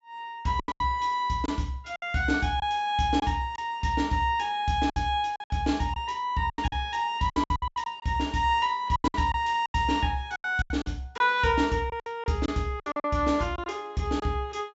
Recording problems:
low-pass filter; nothing above 8 kHz
lost packets; 12% of the sound replaced, filled with silence

